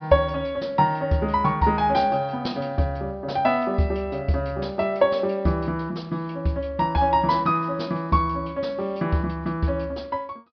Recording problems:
treble missing; nothing above 5.5 kHz

